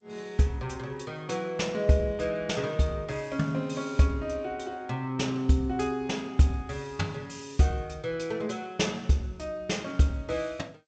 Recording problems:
lossy compression; G.722, log-spectral distance 3 dB, nothing above 7.6 kHz

